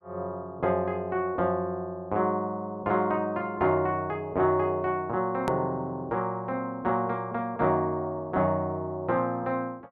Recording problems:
edit click; at 5.5 s

